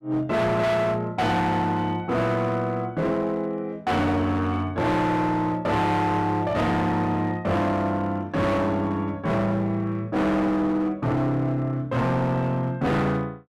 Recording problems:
distorted audio; hard clipping, uneven, signal-to-distortion ratio 8 dB

